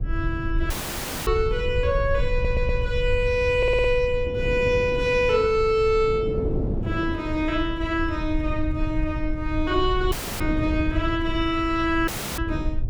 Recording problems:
low-frequency rumble; below 80 Hz, SNR 7 dB
wind on the microphone; below 340 Hz, SNR 12 dB
audio cutting out; at 0.5 s for 0.5 s, at 10 s and at 12 s; filled with static
audio stuttering; at 2.5 s and at 3.5 s

